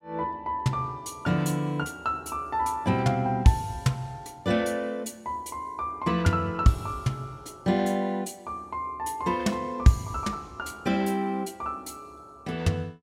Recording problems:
none

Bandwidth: 16 kHz